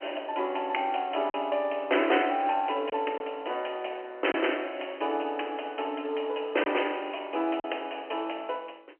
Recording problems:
phone line; 280 Hz to 3.1 kHz, G.711
packet loss; 1.8% of the sound replaced, filled with silence

